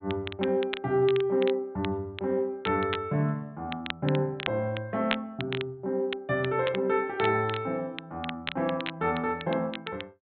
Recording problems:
low-pass filter; nothing above 4 kHz
crackle; vinyl, SNR 10 dB

